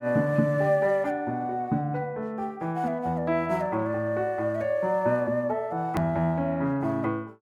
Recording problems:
hard cut with a click; at 6 s

